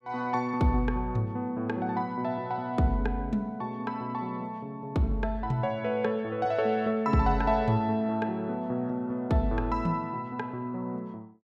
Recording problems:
none

